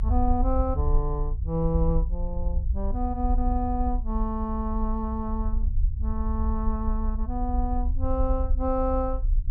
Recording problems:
rumble; below 60 Hz, strongest tone 30 Hz, SNR -1 dB

